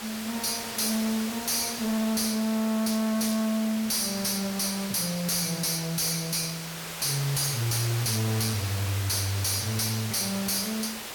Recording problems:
distortion; hard clipping, signal-to-distortion ratio 6 dB
hiss; slope -1 dB per octave, SNR 8 dB

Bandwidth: 18 kHz